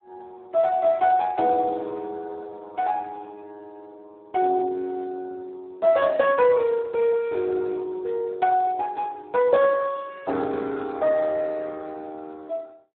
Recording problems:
phone line; 240 Hz to 2.8 kHz, Speex

